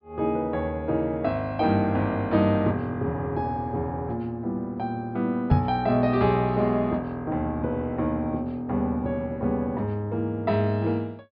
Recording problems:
low-pass filter; nothing above 5.5 kHz
knock on the microphone; at 5.5 s; peak +9 dB vs average level

